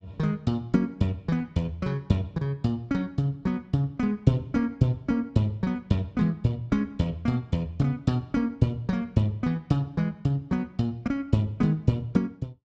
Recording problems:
none

